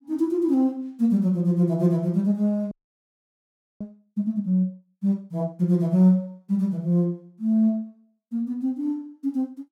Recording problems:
frozen audio; at 2.5 s for 1 s

